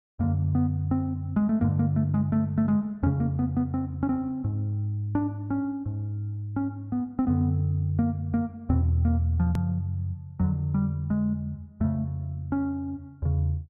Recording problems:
hard cut with a click; at 9.5 s

